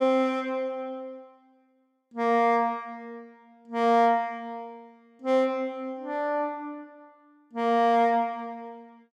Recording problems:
none

